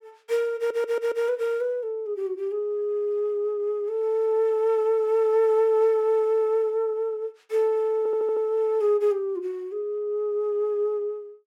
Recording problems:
stutter; at 0.5 s and at 8 s

